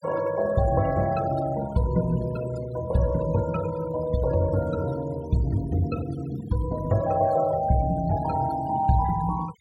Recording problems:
denoising artefacts; signal-to-artefact ratio 18 dB

